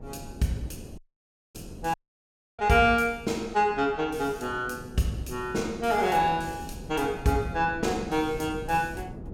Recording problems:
wind on the microphone; below 290 Hz, SNR 16 dB
audio cutting out; at 1 s for 0.5 s and at 2 s for 0.5 s

